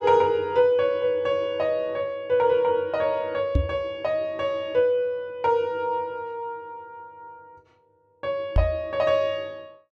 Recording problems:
microphone thump; at 3.5 s and at 8.5 s; peak +6 dB vs average level

